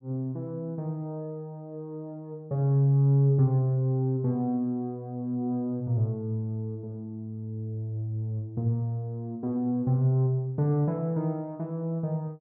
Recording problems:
none

